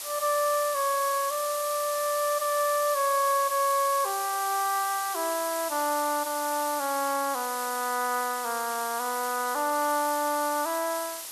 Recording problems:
hiss; slope +2 dB per octave, SNR 7 dB

